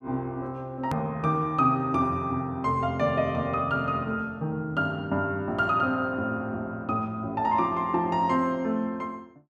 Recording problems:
click at an edit; at 1 s

